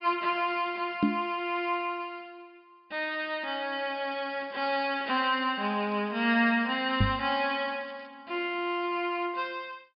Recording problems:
low-pass filter; nothing above 5.5 kHz
microphone bump; at 1 s and at 7 s; peak +8 dB vs average level
crackling; from 3.5 to 6 s and at 7 s; loose cable, SNR 30 dB

